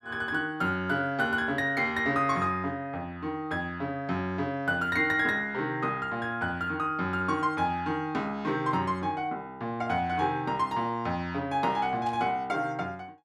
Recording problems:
static burst; at 12 s; peak -14 dB vs average level

